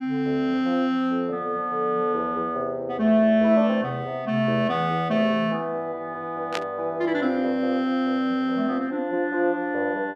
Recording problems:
burst of static; at 6.5 s; peak -1 dB vs average level

